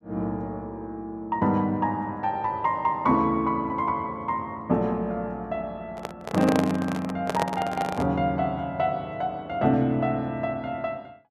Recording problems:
microphone handling noise; from 6 to 8 s; peak +3 dB vs average level

